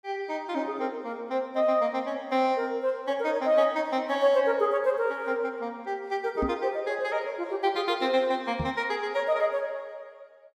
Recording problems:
microphone thump; at 6.5 s and at 8.5 s; peak +1 dB vs average level

